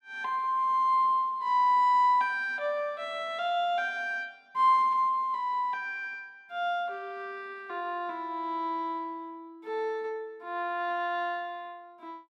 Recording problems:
none

